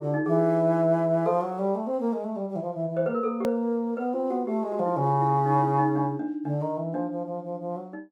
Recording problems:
edit click; at 3.5 s

